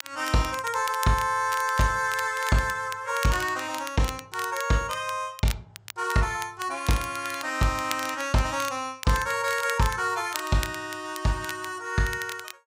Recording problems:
crackling; vinyl, SNR 12 dB

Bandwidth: 15.5 kHz